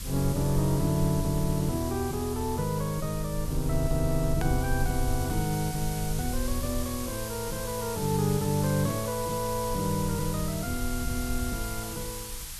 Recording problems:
background hiss; slope +4 dB per octave, SNR 9 dB
low-frequency rumble; below 58 Hz, SNR 9 dB
edit click; at 4.5 s

